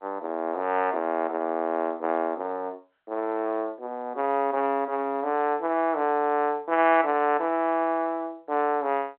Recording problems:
telephone audio; 240 Hz to 3.3 kHz, G.711

